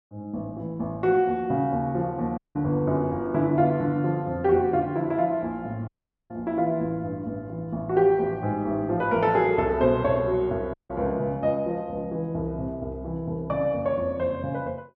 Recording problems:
dropout; at 2.5 s, at 6 s and at 11 s

